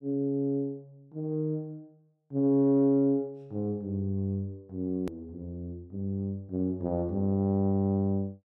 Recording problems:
hard cut with a click; at 5 s

